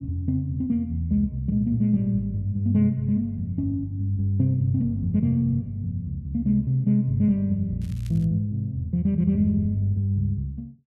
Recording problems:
crackling; at 8 s; loose cable, SNR 29 dB

